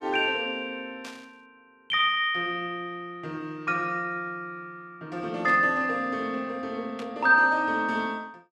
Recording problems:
static burst; at 1 s, at 5.5 s and at 7 s; peak -11 dB vs average level

